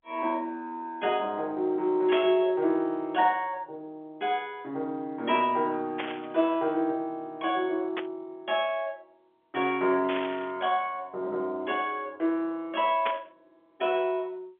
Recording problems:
telephone audio; 220 Hz to 3.7 kHz, G.711
burst of static; 5 times, first at 2 s; peak 0 dB vs average level

